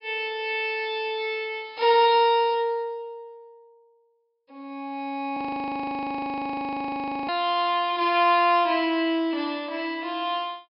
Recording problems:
low-pass filter; nothing above 5.5 kHz
frozen audio; at 5.5 s for 2 s

